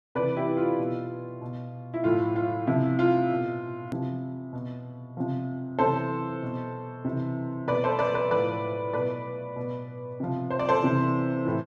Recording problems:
edit click; at 4 s

